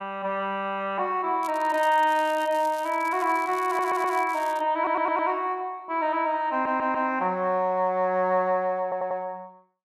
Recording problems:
crackling; from 1.5 to 4.5 s; loose cable, SNR 22 dB
stutter; 4 times, first at 3.5 s

